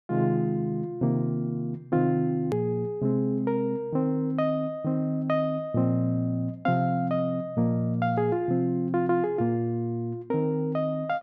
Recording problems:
hard cut with a click; at 2.5 s

